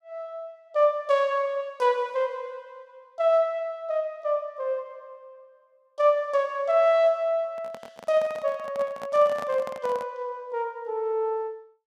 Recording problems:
handling noise; from 7.5 to 10 s; peak -8 dB vs average level

